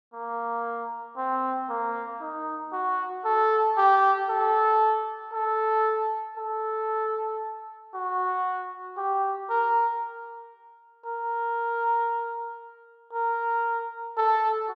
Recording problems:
none

